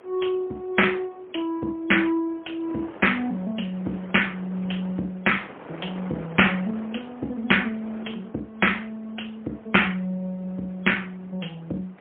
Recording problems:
telephone audio; 240 Hz to 3.3 kHz, AMR-NB, then MP3
wind on the microphone; below 1.2 kHz, SNR 19 dB

